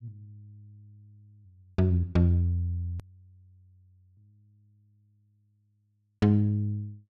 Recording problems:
click at an edit; at 3 s

